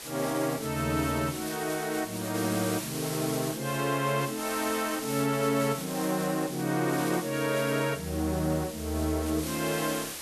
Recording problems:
background hiss; slope 0 dB per octave, SNR 8 dB

